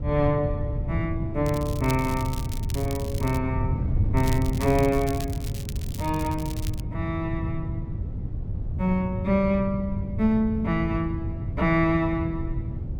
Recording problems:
wind on the microphone; below 130 Hz, SNR 4 dB
crackle; from 1.5 to 3.5 s and from 4 to 7 s; loose cable, SNR 14 dB

